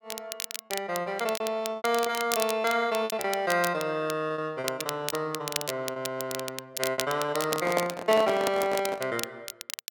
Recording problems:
crackle; vinyl, SNR 8 dB
lost packets; 8% of the sound replaced, filled with repeated pitch periods
handling noise; from 7.5 to 9 s; peak +3 dB vs average level

